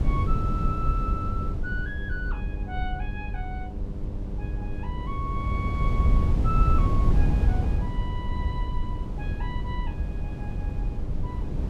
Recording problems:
mains hum; 50 Hz, harmonics up to 1.1 kHz, SNR 8 dB
low-frequency rumble; below 66 Hz, strongest tone 42 Hz, SNR 2 dB
wind on the microphone; below 110 Hz, SNR -7 dB

